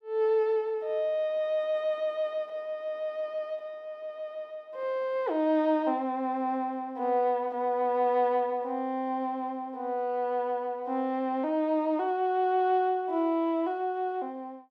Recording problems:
none

